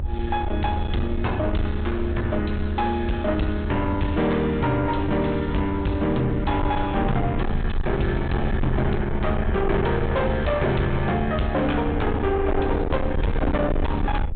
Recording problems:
low-pass filter; nothing above 4 kHz
distortion; soft clipping, signal-to-distortion ratio 8 dB
rumble; below 88 Hz, SNR 5 dB

